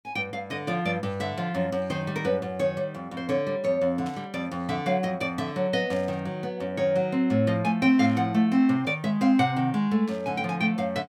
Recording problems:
static burst; 4 times, first at 4 s; peak -15 dB vs average level

